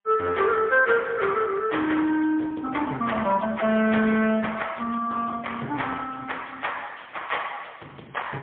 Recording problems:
telephone audio; 240 Hz to 3.5 kHz, AMR-NB, then MP3
distorted audio; hard clipping, uneven, signal-to-distortion ratio 12 dB

